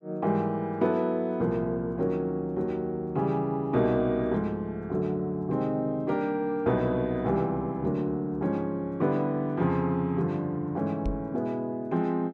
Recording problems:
knock on the microphone; at 11 s; peak -1 dB vs average level

